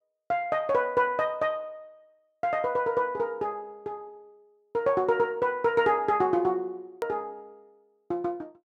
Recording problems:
click at an edit; at 7 s

